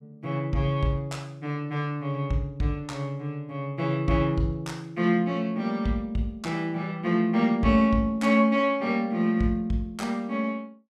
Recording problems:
none

